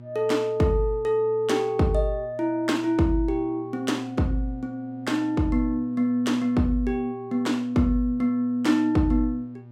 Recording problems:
hum; 60 Hz, harmonics up to 840 Hz, SNR 20 dB

